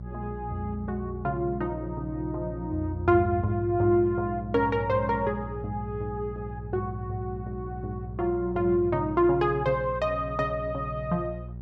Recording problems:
hum; 60 Hz, harmonics up to 420 Hz, SNR 11 dB

